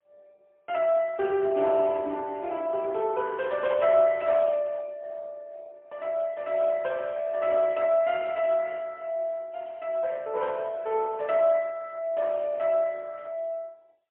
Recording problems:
phone line; 320 Hz to 3.2 kHz, AMR-NB, then MP3

